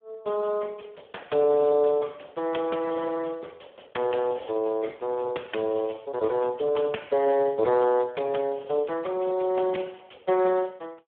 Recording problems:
phone line; 240 Hz to 3.3 kHz, Speex

